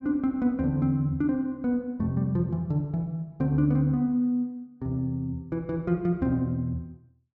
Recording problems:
none

